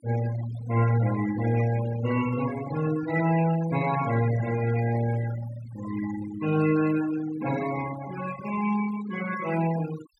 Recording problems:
denoising artefacts; signal-to-artefact ratio 12 dB

